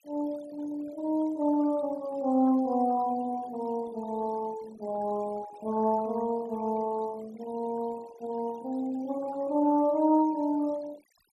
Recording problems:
noise reduction artefacts; signal-to-artefact ratio 21 dB

